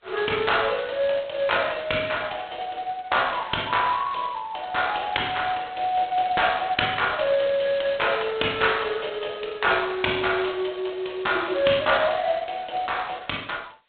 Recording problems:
telephone audio; 280 Hz to 3.7 kHz, G.726

